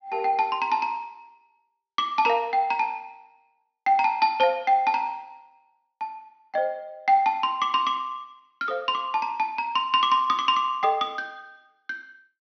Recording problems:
treble missing; nothing above 6.1 kHz

